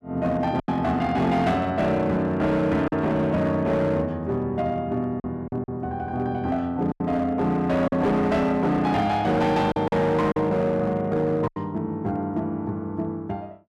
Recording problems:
distorted audio; hard clipping, signal-to-distortion ratio 11 dB
packet loss; 4% of the sound replaced, filled with silence

